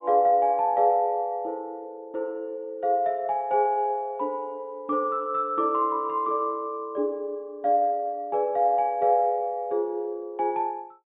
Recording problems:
treble missing; nothing above 4 kHz

